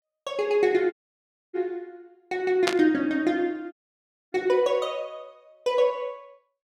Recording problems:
dropout; at 1 s for 0.5 s and at 3.5 s for 0.5 s
static burst; at 2.5 s; peak +4 dB vs average level

